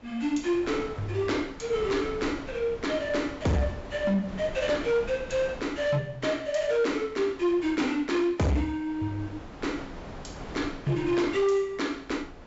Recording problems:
treble missing; nothing above 8 kHz
distortion; hard clipping, uneven, signal-to-distortion ratio 12 dB
wind on the microphone; below 810 Hz, SNR 15 dB

